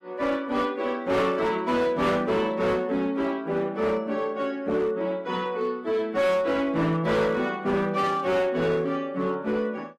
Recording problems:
lossy compression; AAC, log-spectral distance 2 dB, nothing above 12 kHz
distorted audio; hard clipping, signal-to-distortion ratio 11 dB
burst of static; at 8 s; peak -14 dB vs average level

